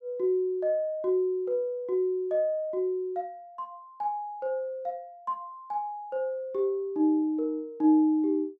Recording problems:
none

